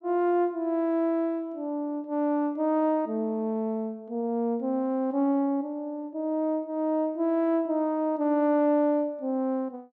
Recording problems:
none

